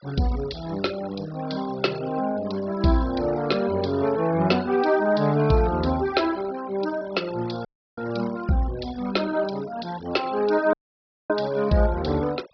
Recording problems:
treble cut off; nothing above 5.5 kHz
denoising artefacts; signal-to-artefact ratio 18 dB
audio cutting out; at 7.5 s and at 11 s for 0.5 s

